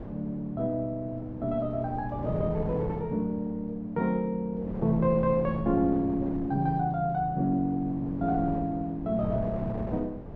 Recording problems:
wind on the microphone; below 440 Hz, SNR 10 dB

